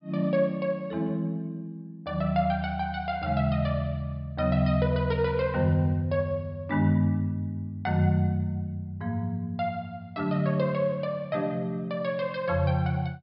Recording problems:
low-pass filter; nothing above 5.5 kHz

